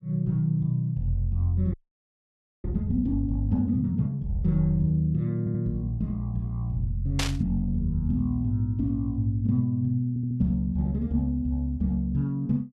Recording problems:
audio freezing; at 1.5 s for 1 s
audio stuttering; at 5.5 s and at 10 s
static burst; at 7 s; peak +2 dB vs average level

